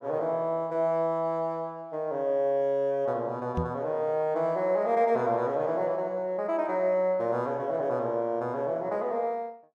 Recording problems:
microphone thump; at 3.5 s; peak +1 dB vs average level

